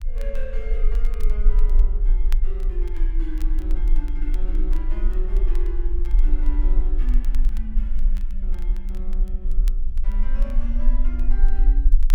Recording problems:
rumble; below 36 Hz, strongest tone 20 Hz, SNR -14 dB
crackling; vinyl, SNR 15 dB

